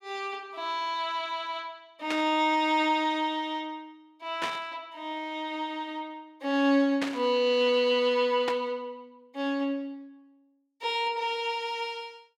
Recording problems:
static burst; 4 times, first at 2 s; peak -1 dB vs average level

